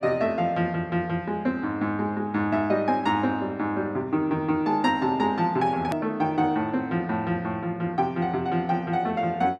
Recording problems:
click at an edit; at 6 s

